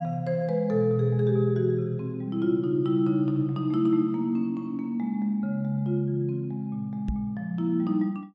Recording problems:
knock on the microphone; at 7 s; peak +1 dB vs average level

